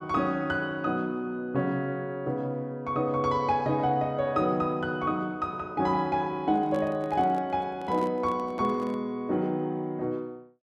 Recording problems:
microphone handling noise; from 6.5 to 9 s; peak -7 dB vs average level

